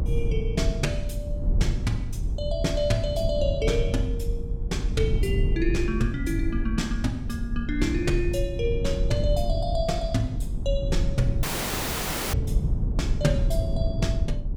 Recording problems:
rumble; below 94 Hz, SNR 0 dB
audio cutting out; at 11 s for 1 s

